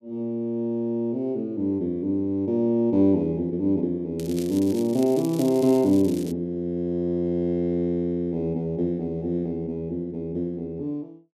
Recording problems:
crackle; from 4 to 6.5 s; loose cable, SNR 18 dB

